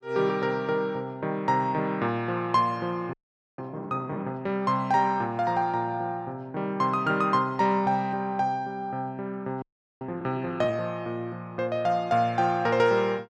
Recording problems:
frozen audio; at 3 s and at 9.5 s

